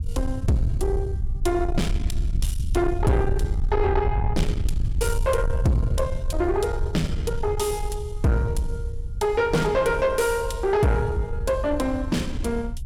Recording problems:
distortion; soft clipping, signal-to-distortion ratio 8 dB
rumble; below 84 Hz, SNR 4 dB

